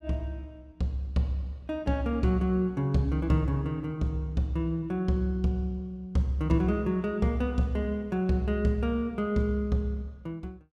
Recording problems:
none

